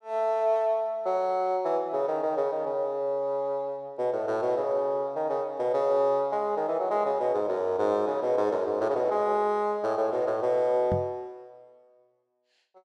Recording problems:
knock on the microphone; at 11 s; peak -1 dB vs average level

